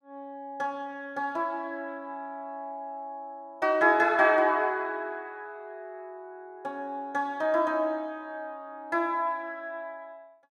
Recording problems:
none

